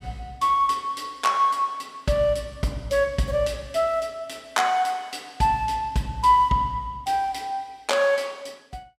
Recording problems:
none

